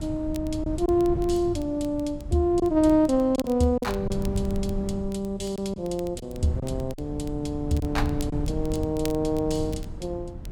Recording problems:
wind on the microphone; below 140 Hz, SNR 9 dB
crackle; vinyl, SNR 23 dB
lost packets; 3% of the sound replaced, filled with silence

